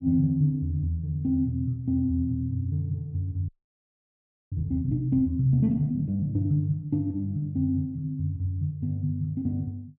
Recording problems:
frozen audio; at 3.5 s for 1 s

